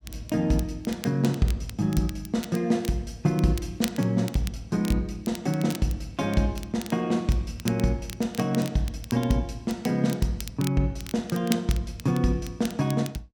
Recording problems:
crackle; vinyl, SNR 15 dB

